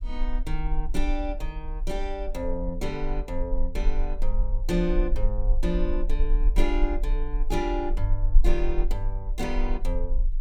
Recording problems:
rumble; below 38 Hz, strongest tone 24 Hz, SNR -2 dB

